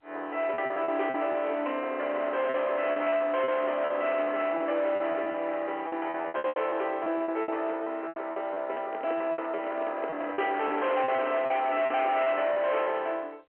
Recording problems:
telephone audio; 280 Hz to 3.2 kHz, G.711
distorted audio; hard clipping, signal-to-distortion ratio 11 dB
lost packets; 12% of the sound replaced, filled with repeated pitch periods
microphone handling noise; from 8.5 to 12 s; peak -3 dB vs average level

